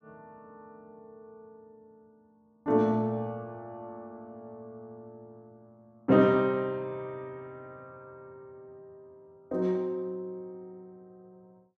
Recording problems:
none

